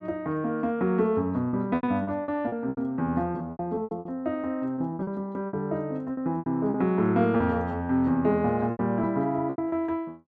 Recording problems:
lost packets; 12% of the sound replaced, filled with repeated pitch periods

